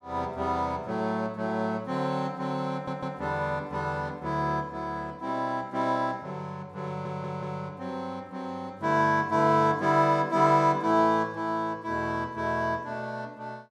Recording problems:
audio stuttering; at 2.5 s and at 7 s

